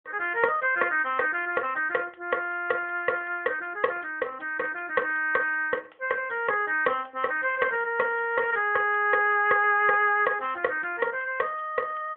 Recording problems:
phone line; 280 Hz to 3.3 kHz, AMR-NB

